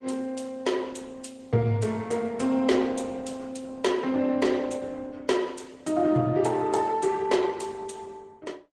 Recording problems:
lossy codec; MP3, then Opus, log-spectral distance 4 dB

